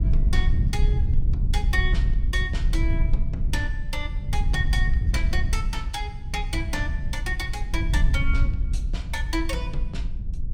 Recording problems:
wind noise; below 68 Hz, SNR -5 dB

